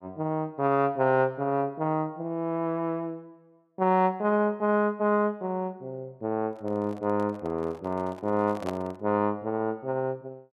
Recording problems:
handling noise; from 6.5 to 9 s; peak -3 dB vs average level

